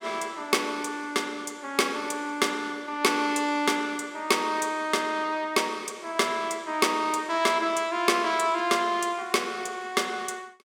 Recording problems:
none

